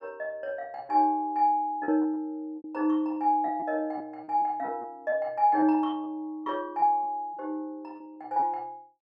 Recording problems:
packet loss; 8% of the sound replaced, filled with repeated pitch periods

